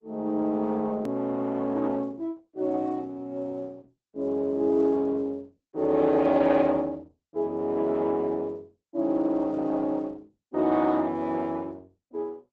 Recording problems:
lossy codec; Opus, log-spectral distance 2 dB
click at an edit; at 1 s

